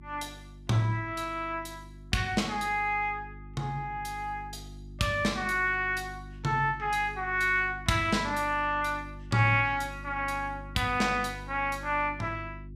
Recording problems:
mains hum; 50 Hz, harmonics up to 350 Hz, SNR 16 dB

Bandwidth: 15 kHz